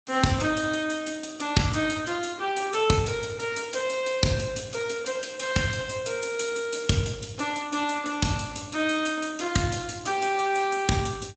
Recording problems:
codec artefacts; Speex, log-spectral distance 9 dB, nothing above 8 kHz

